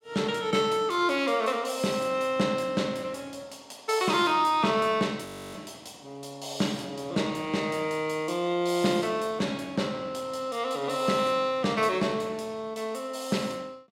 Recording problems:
audio freezing; at 5.5 s

